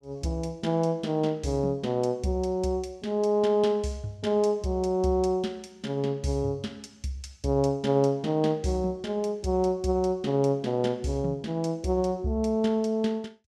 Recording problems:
none

